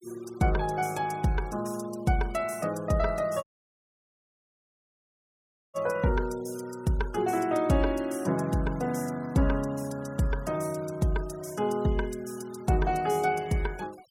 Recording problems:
noise reduction artefacts; signal-to-artefact ratio 23 dB
dropout; at 3.5 s for 2.5 s

